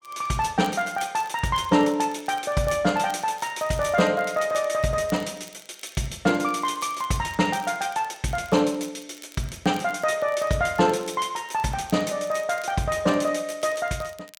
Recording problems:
crackling; vinyl, SNR 24 dB

